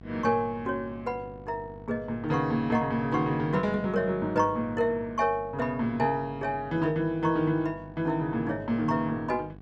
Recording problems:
hum; 50 Hz, harmonics up to 1.2 kHz, SNR 19 dB

